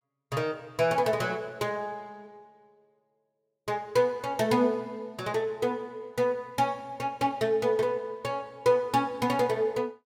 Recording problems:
none

